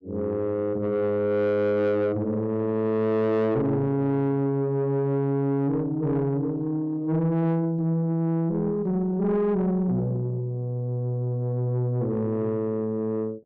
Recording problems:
distorted audio; soft clipping, signal-to-distortion ratio 11 dB

